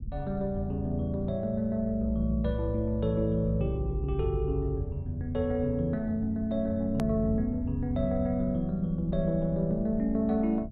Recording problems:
low-pass filter; nothing above 4 kHz
low-frequency rumble; below 110 Hz, SNR 14 dB
hard cut with a click; at 7 s

